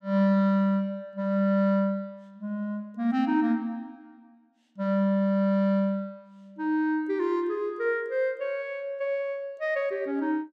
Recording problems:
none

